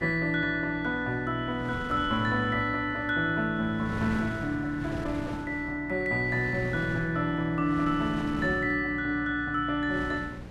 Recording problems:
electrical hum; 60 Hz, harmonics up to 780 Hz, SNR 18 dB
wind noise; below 510 Hz, SNR 13 dB

